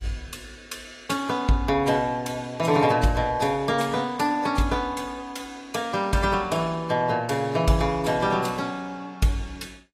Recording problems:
lossy compression; AAC, log-spectral distance 3 dB, nothing above 13.8 kHz

